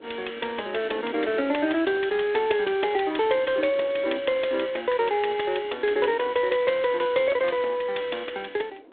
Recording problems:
telephone audio; 260 Hz to 3.7 kHz, G.726
wind on the microphone; below 510 Hz, SNR 20 dB

